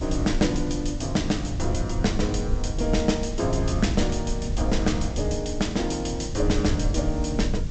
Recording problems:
treble cut off; nothing above 8 kHz
background hiss; slope 0 dB per octave, SNR 22 dB
rumble; below 92 Hz, SNR 4 dB

